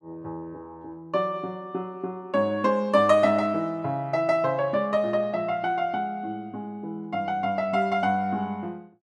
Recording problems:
none

